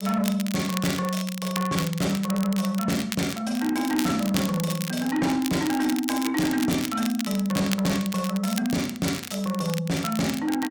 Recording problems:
distorted audio; soft clipping, signal-to-distortion ratio 12 dB
crackle; vinyl, SNR 9 dB

